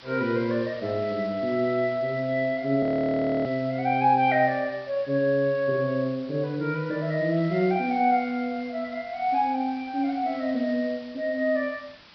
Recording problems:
treble missing; nothing above 5.5 kHz
background hiss; SNR 22 dB
audio freezing; at 3 s for 0.5 s

